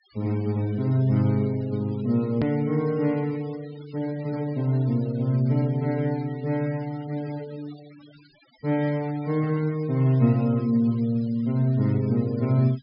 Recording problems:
low-pass filter; nothing above 5.5 kHz
denoising artefacts; signal-to-artefact ratio 25 dB
hard cut with a click; at 2.5 s

